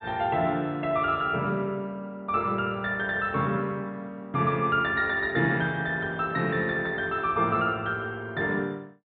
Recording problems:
low-pass filter; nothing above 4 kHz

